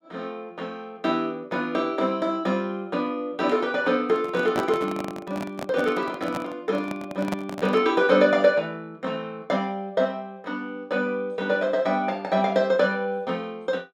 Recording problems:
microphone handling noise; from 4 to 8 s; peak -1 dB vs average level

